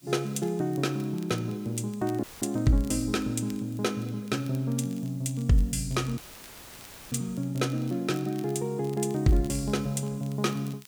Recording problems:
background hiss; SNR 26 dB
crackle; vinyl, SNR 24 dB
dropout; at 2 s and at 6 s for 1 s; filled with static

